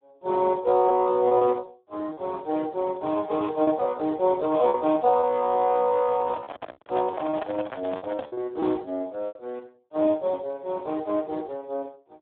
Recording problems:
phone line; 260 Hz to 2 kHz, Speex
packet loss; 6% of the sound replaced, filled with repeated pitch periods
microphone handling noise; from 6 to 8.5 s; peak -3 dB vs average level

